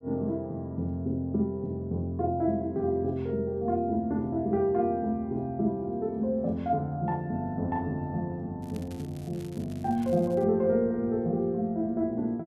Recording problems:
crackle; from 8.5 to 10 s; loose cable, SNR 25 dB

